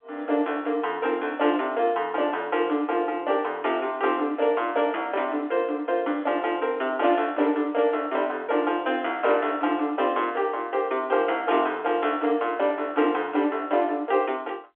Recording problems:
phone line; 260 Hz to 3.5 kHz, G.711

